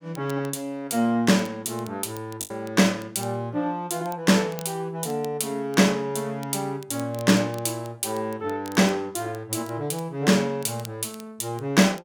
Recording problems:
crackling; vinyl, SNR 23 dB
packet loss; 0.7% of the sound replaced, filled with the last packet

